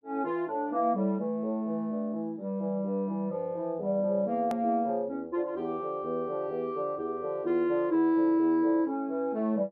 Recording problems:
hard cut with a click; at 4.5 s

